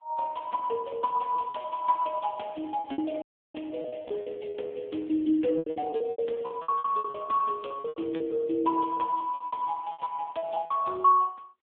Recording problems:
phone line; 240 Hz to 2.1 kHz, AMR-NB
packet loss; 15% of the sound replaced, filled with repeated pitch periods
audio cutting out; at 3 s

